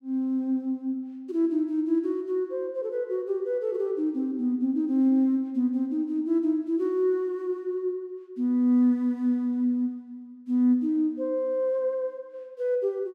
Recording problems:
none

